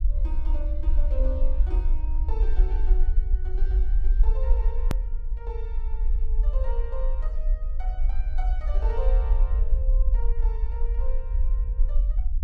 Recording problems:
rumble; below 46 Hz, strongest tone 20 Hz, SNR -14 dB
hard cut with a click; at 5 s

